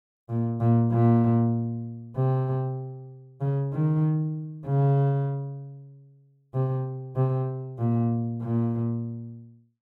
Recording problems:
none

